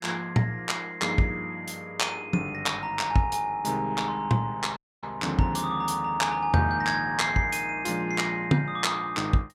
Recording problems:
audio cutting out; at 5 s

